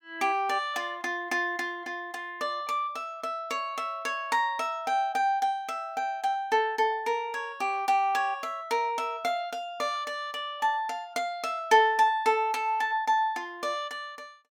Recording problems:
none

